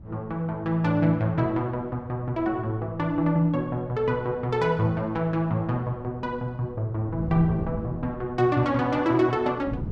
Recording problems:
wind noise; below 200 Hz, SNR 16 dB

